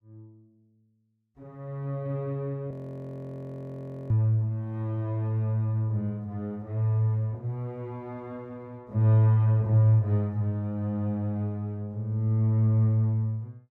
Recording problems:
audio freezing; at 2.5 s for 1.5 s

